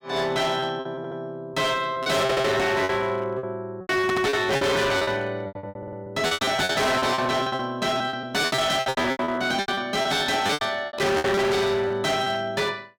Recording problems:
distortion; hard clipping, signal-to-distortion ratio 6 dB
lost packets; 18% of the sound replaced, filled with repeated pitch periods
audio stuttering; 4 times, first at 1 s

